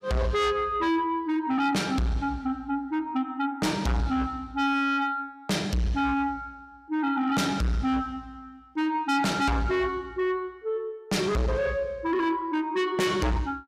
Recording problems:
distorted audio; soft clipping, signal-to-distortion ratio 6 dB

